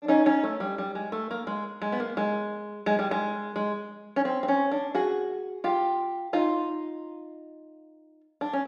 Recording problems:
none

